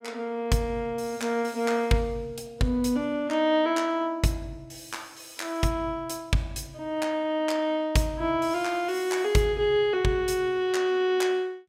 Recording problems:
none

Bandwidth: 16 kHz